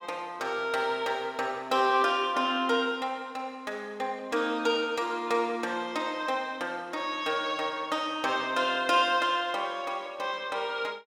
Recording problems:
none

